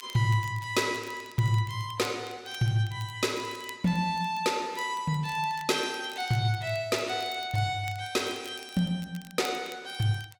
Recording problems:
crackling; vinyl, SNR 21 dB

